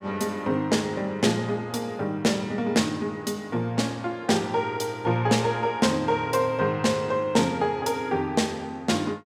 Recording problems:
none

